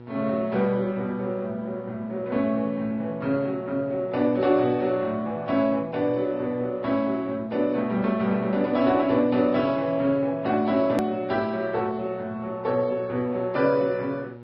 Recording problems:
lossy codec; Vorbis, then MP2, log-spectral distance 2 dB, nothing above 13.1 kHz
electrical hum; 60 Hz, harmonics up to 1.4 kHz, SNR 19 dB
click at an edit; at 11 s

